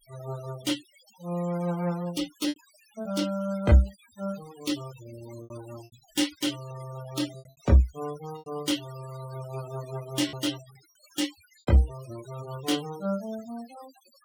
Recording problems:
denoising artefacts; signal-to-artefact ratio 16 dB
lost packets; 4% of the sound replaced, filled with repeated pitch periods

